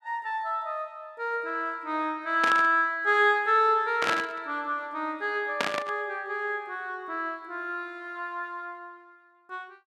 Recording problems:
burst of static; at 2.5 s, at 4 s and at 5.5 s; peak +4 dB vs average level

